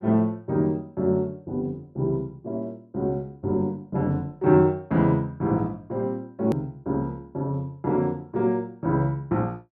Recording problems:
click at an edit; at 6.5 s

